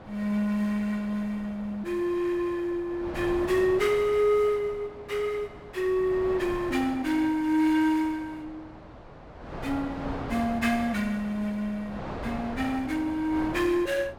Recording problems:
wind on the microphone; below 900 Hz, SNR 13 dB

